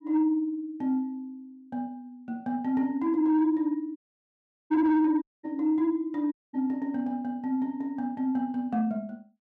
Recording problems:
distortion; soft clipping, signal-to-distortion ratio 10 dB
audio cutting out; at 4 s for 0.5 s, at 5 s and at 6.5 s

